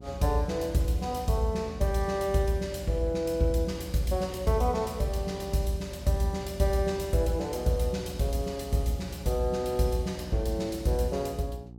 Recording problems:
hum; 60 Hz, harmonics up to 480 Hz, SNR 19 dB

